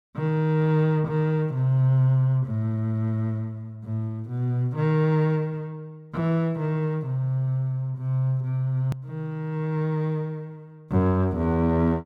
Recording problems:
edit click; at 9 s

